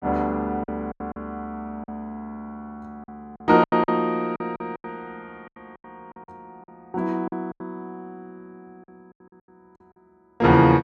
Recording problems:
packet loss; 11% of the sound replaced, filled with silence

